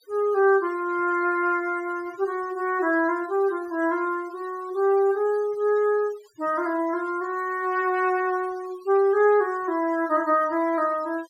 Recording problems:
denoising artefacts; signal-to-artefact ratio 25 dB

